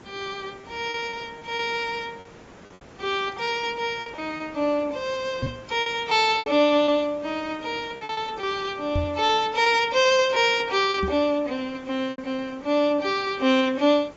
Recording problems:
lossy compression; AAC, log-spectral distance 4 dB
hiss; slope -6 dB per octave, SNR 23 dB
lost packets; 7% of the sound replaced, filled with repeated pitch periods
knock on the microphone; at 5.5 s, at 9 s and at 11 s; peak 0 dB vs average level

